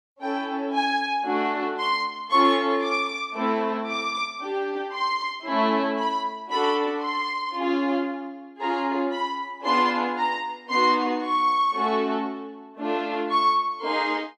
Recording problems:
none

